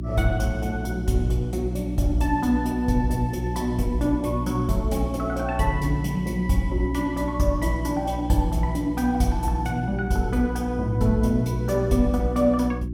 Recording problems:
hum; 60 Hz, harmonics up to 360 Hz, SNR 7 dB

